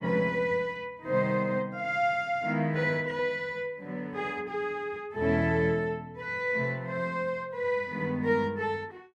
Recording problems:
none

